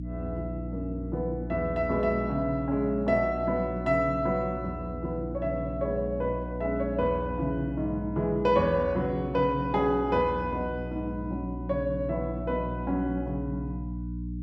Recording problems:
electrical hum; 60 Hz, harmonics up to 300 Hz, SNR 8 dB

